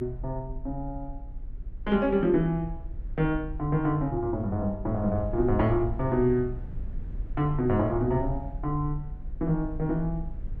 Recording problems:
rumble; below 58 Hz, SNR 11 dB

